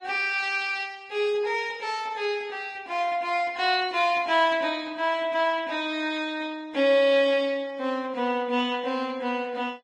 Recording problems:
lossy compression; Vorbis, log-spectral distance 3 dB, nothing above 10.1 kHz

